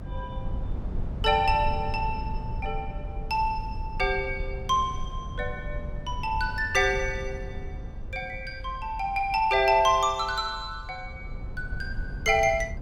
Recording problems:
rumble; below 94 Hz, SNR 10 dB

